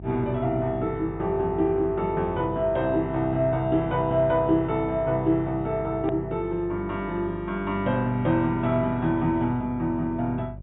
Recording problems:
treble missing; nothing above 4 kHz
mains hum; 50 Hz, harmonics up to 400 Hz, SNR 15 dB
hard cut with a click; at 6 s

